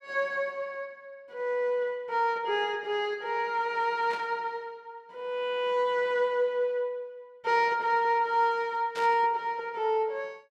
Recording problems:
burst of static; at 4 s and at 9 s; peak -8 dB vs average level

